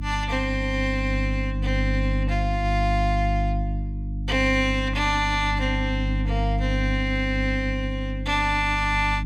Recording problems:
hum; 50 Hz, harmonics up to 300 Hz, SNR 2 dB

